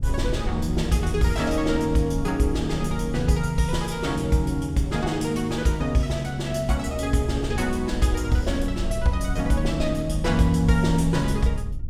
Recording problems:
low-frequency rumble; below 72 Hz, SNR 9 dB

